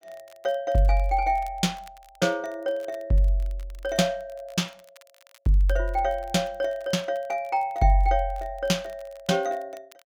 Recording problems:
crackling; vinyl, SNR 29 dB

